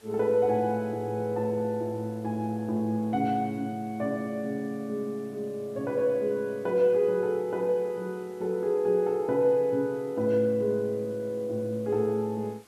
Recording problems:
background hiss; slope -2 dB per octave, SNR 29 dB

